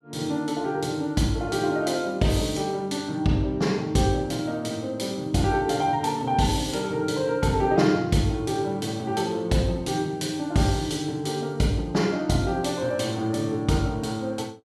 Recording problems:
none

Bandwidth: 14.5 kHz